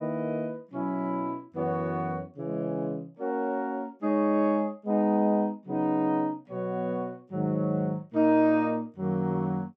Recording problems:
none

